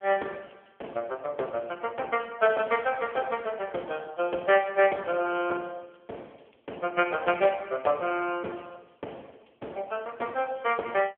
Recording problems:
phone line; 300 Hz to 3.3 kHz, AMR-NB

